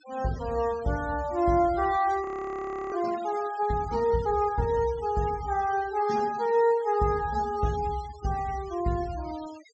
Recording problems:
treble missing; nothing above 8 kHz
noise reduction artefacts; signal-to-artefact ratio 19 dB
frozen audio; at 2 s for 0.5 s

